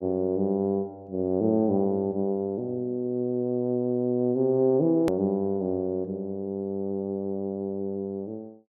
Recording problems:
edit click; at 5 s

